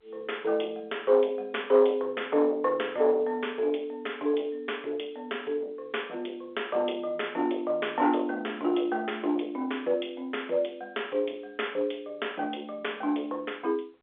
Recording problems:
phone line; 320 Hz to 3.7 kHz, G.711
distortion; soft clipping, signal-to-distortion ratio 16 dB

